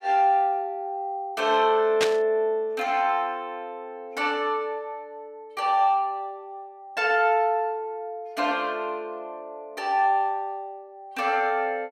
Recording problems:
static burst; at 2 s; peak +4 dB vs average level

